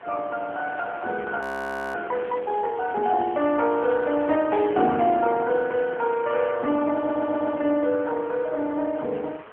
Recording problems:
telephone audio; 260 Hz to 3 kHz, AMR-NB
wind on the microphone; below 1.8 kHz, SNR 18 dB
frozen audio; at 1.5 s for 0.5 s
crackle; from 2 to 4.5 s; loose cable, SNR 27 dB
stutter; at 7 s

